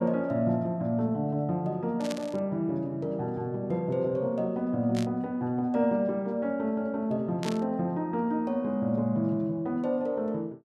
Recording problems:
burst of static; at 2 s, at 5 s and at 7.5 s; peak -4 dB vs average level

